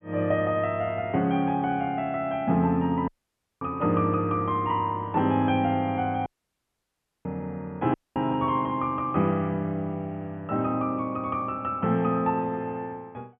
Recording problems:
low-pass filter; nothing above 3.4 kHz
dropout; at 3 s for 0.5 s, at 6.5 s for 1 s and at 8 s

